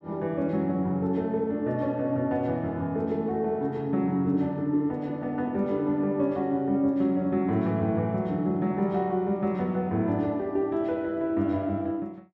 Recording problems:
none

